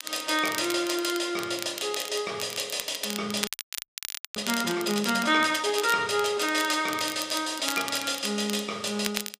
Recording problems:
crackle; vinyl, SNR 9 dB
audio freezing; at 3.5 s for 1 s

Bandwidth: 15 kHz